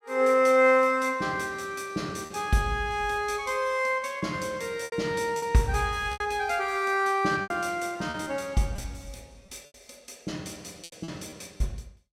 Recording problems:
lost packets; 5% of the sound replaced, filled with repeated pitch periods

